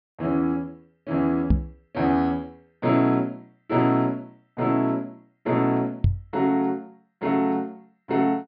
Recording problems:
treble missing; nothing above 5.1 kHz
knock on the microphone; at 1.5 s and at 6 s; peak +7 dB vs average level

